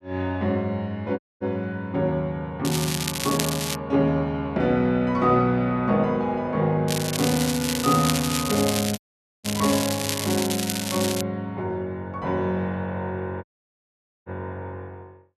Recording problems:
audio cutting out; at 1 s, at 9 s and at 13 s for 1 s
crackling; from 2.5 to 4 s and from 7 to 11 s; loose cable, SNR 4 dB

